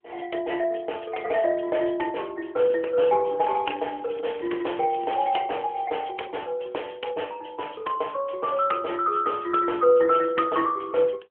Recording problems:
telephone audio; 300 Hz to 3.2 kHz, AMR-NB
crackling; from 3.5 to 6 s; loose cable, SNR 26 dB

